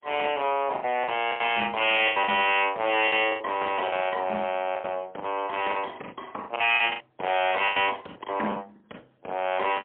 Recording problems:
phone line; 280 Hz to 3.3 kHz, AMR-NB, then MP3
distortion; hard clipping, uneven, signal-to-distortion ratio 10 dB
lost packets; 12% of the sound replaced, filled with the last packet

